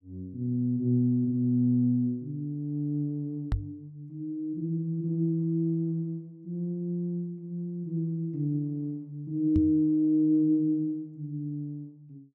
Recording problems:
microphone bump; at 3.5 s and at 9.5 s; peak +3 dB vs average level

